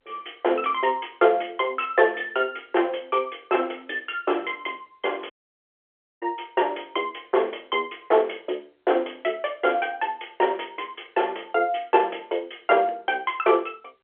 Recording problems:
phone line; 300 Hz to 3.4 kHz, G.711
audio cutting out; at 5.5 s for 1 s

